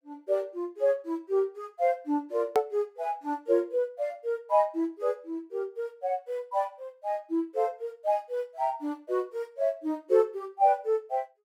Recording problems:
hard cut with a click; at 2.5 s

